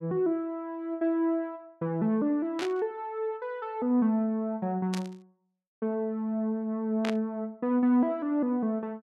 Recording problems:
burst of static; at 2.5 s, at 5 s and at 7 s; peak -3 dB vs average level

